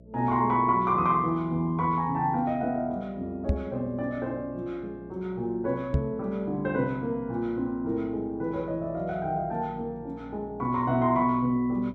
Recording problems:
mains hum; 60 Hz, harmonics up to 660 Hz, SNR 21 dB
microphone thump; at 3.5 s and at 6 s; peak +6 dB vs average level

